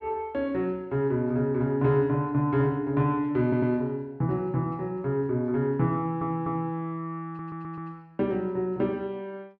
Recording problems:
stutter; at 3.5 s, at 6 s and at 7.5 s

